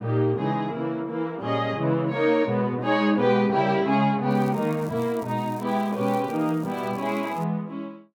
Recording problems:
crackle; from 4.5 to 7.5 s; loose cable, SNR 26 dB

